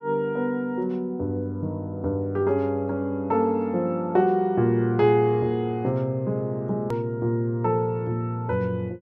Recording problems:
click at an edit; at 7 s

